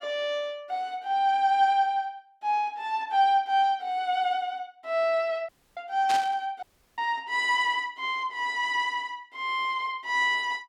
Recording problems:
audio cutting out; at 5.5 s and at 6.5 s
static burst; at 6 s; peak -2 dB vs average level

